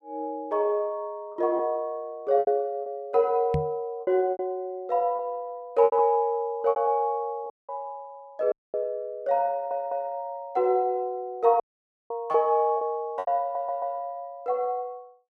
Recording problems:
lost packets; 5% of the sound replaced, filled with repeated pitch periods
microphone bump; at 3.5 s; peak +2 dB vs average level
dropout; at 7.5 s, at 8.5 s and at 12 s for 0.5 s
stutter; at 9.5 s and at 13 s

